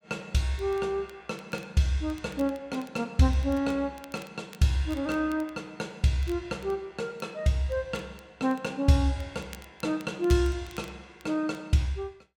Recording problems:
crackle; vinyl, SNR 25 dB

